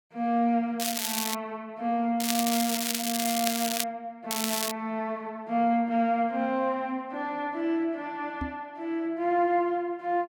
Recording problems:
crackling; at 1 s, from 2 to 4 s and at 4.5 s; loose cable, SNR 1 dB
microphone bump; at 8.5 s; peak -2 dB vs average level

